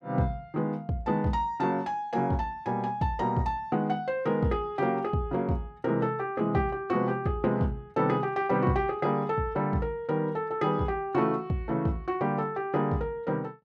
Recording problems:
none

